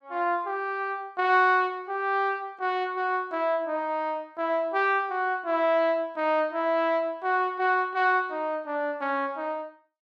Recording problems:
none

